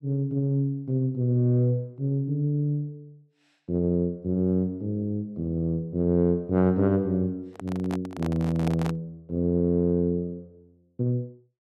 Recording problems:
microphone handling noise; from 7.5 to 9 s; peak -3 dB vs average level

